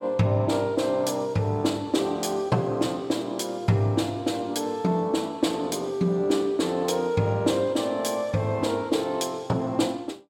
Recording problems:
none

